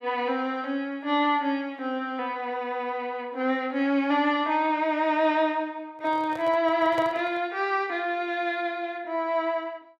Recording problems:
microphone handling noise; from 6 to 7.5 s; peak -4 dB vs average level

